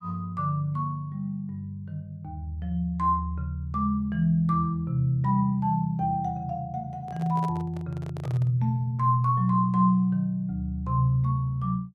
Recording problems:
microphone handling noise; from 7 to 8.5 s; peak -9 dB vs average level

